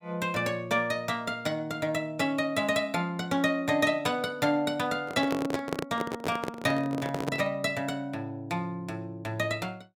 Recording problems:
handling noise; from 5 to 7.5 s; peak +2 dB vs average level

